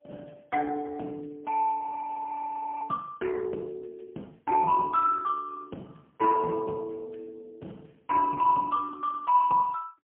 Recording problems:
phone line; 260 Hz to 3.2 kHz, AMR-NB, then MP3
frozen audio; at 2 s for 1 s

